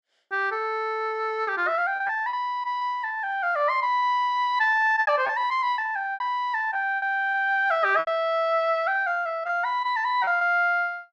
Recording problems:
packet loss; 8% of the sound replaced, filled with repeated pitch periods

